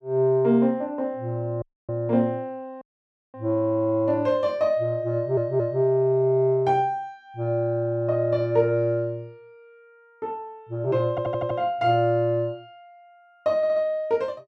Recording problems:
dropout; at 1.5 s and at 3 s for 0.5 s
stutter; at 5 s, at 11 s and at 14 s

